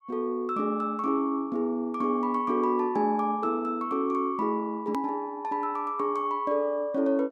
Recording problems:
hard cut with a click; at 5 s

